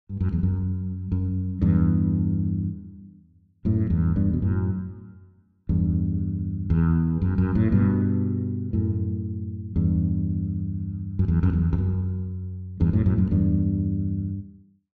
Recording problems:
none

